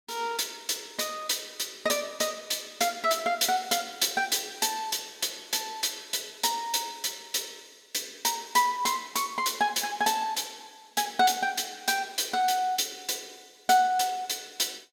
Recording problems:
none

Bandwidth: 18 kHz